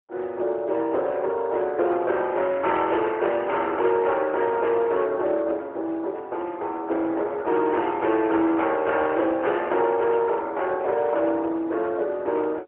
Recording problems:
phone line; 280 Hz to 3.4 kHz, AMR-NB, then MP3
distorted audio; hard clipping, uneven, signal-to-distortion ratio 13 dB

